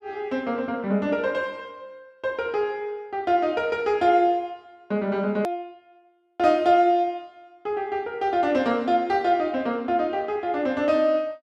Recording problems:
hard cut with a click; at 5.5 s

